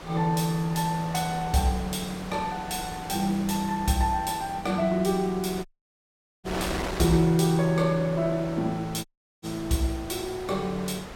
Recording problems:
wind on the microphone; below 1.9 kHz, SNR 12 dB
dropout; at 5.5 s for 1 s and at 9 s

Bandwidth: 17 kHz